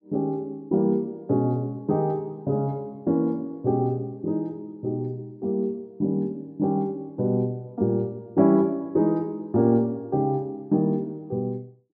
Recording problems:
none

